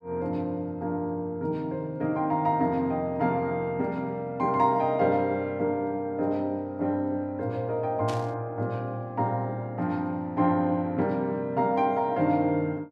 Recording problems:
burst of static; at 8 s; peak -8 dB vs average level

